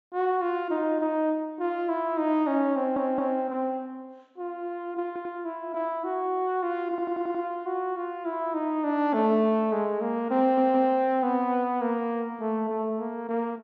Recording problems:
low-pass filter; nothing above 7.7 kHz
audio stuttering; 4 times, first at 3 s

